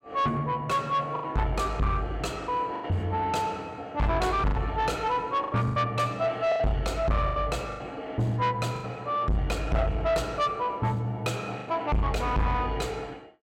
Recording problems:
distortion; soft clipping, signal-to-distortion ratio 6 dB
packet loss; 6% of the sound replaced, filled with the last packet

